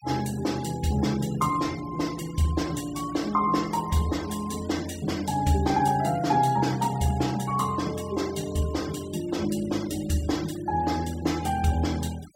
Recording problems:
denoising artefacts; signal-to-artefact ratio 18 dB

